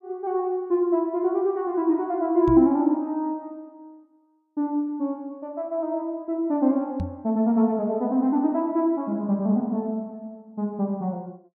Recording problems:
knock on the microphone; at 2.5 s and at 7 s; peak -1 dB vs average level

